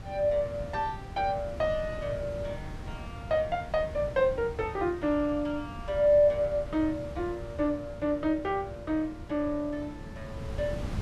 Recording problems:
wind on the microphone; below 200 Hz, SNR 12 dB

